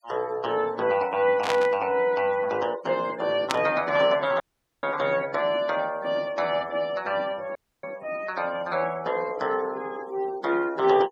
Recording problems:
noise reduction artefacts; signal-to-artefact ratio 21 dB
static burst; at 1.5 s and at 3.5 s; peak +3 dB vs average level
audio cutting out; at 4.5 s and at 7.5 s

